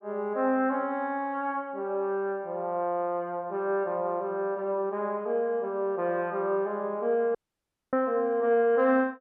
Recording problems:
audio cutting out; at 7.5 s for 0.5 s

